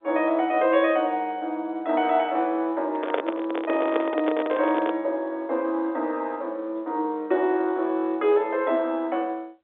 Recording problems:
phone line; 260 Hz to 3.7 kHz, G.711
handling noise; from 3 to 5 s; peak +3 dB vs average level

